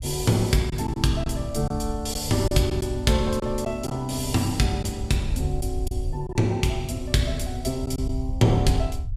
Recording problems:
rumble; below 78 Hz, SNR 9 dB
packet loss; 4% of the sound replaced, filled with silence

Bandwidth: 15 kHz